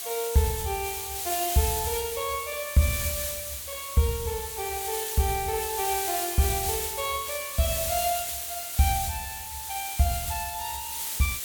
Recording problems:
background hiss; slope +2 dB per octave, SNR 2 dB

